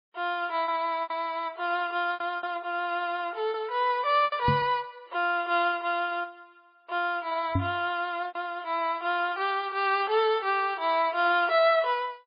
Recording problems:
lossy compression; MP3, log-spectral distance 2 dB, nothing above 4 kHz
lost packets; 5% of the sound replaced, filled with repeated pitch periods
microphone bump; at 4.5 s and at 7.5 s; peak +3 dB vs average level

